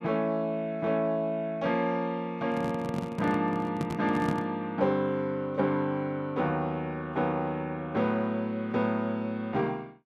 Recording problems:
microphone handling noise; from 2.5 to 4.5 s; peak +3 dB vs average level

